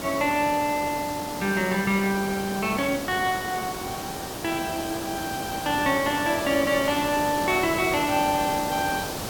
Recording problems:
background hiss; SNR 7 dB

